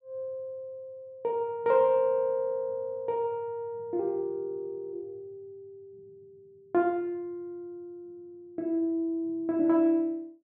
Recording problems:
none

